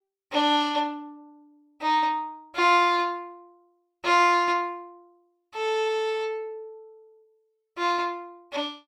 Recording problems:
none

